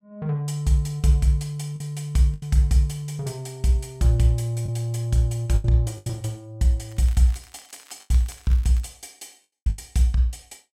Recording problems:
packet loss; 5% of the sound replaced, filled with the last packet
crackling; from 7 to 9 s; loose cable, SNR 26 dB

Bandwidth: 16 kHz